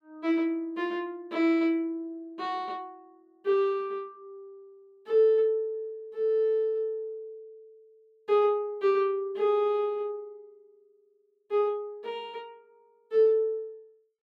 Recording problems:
none

